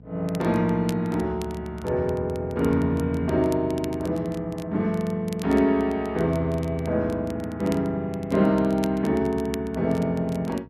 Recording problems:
hum; 60 Hz, harmonics up to 720 Hz, SNR 23 dB
crackling; vinyl, SNR 22 dB

